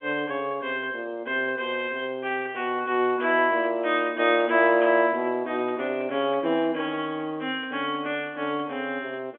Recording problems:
phone line; 240 Hz to 3.4 kHz, G.711

